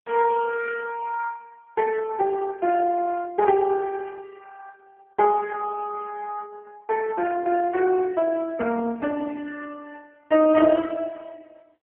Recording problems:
phone line; 110 Hz to 2.5 kHz, AMR-NB

